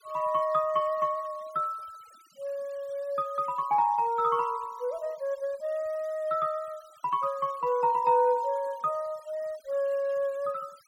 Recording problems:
denoising artefacts; signal-to-artefact ratio 27 dB

